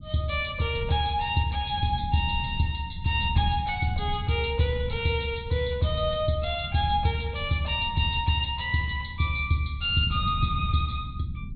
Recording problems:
treble cut off; nothing above 4.2 kHz
rumble; below 140 Hz, SNR 11 dB

